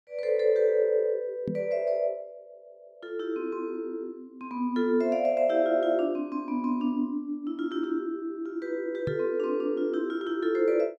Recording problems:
microphone bump; at 1.5 s and at 9 s; peak -1 dB vs average level

